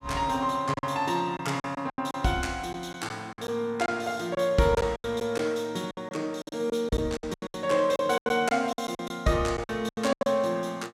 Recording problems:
lost packets; 13% of the sound replaced, filled with silence

